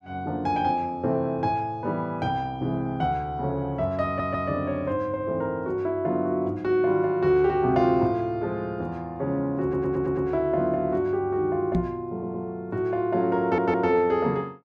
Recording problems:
audio stuttering; 4 times, first at 4 s
knock on the microphone; at 12 s; peak +4 dB vs average level

